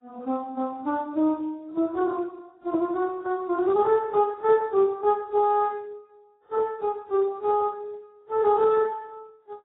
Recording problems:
lossy compression; Speex, then AAC, log-spectral distance 3 dB, nothing above 10.7 kHz

